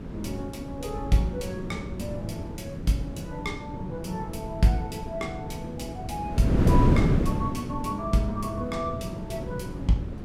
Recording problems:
wind on the microphone; below 280 Hz, SNR 0 dB

